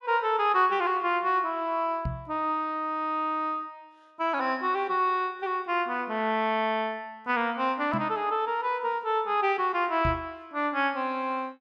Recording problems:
microphone bump; at 2 s, at 8 s and at 10 s; peak -1 dB vs average level

